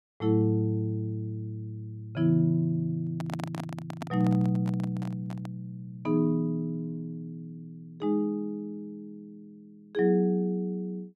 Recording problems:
microphone handling noise; from 3 to 5.5 s; peak -3 dB vs average level

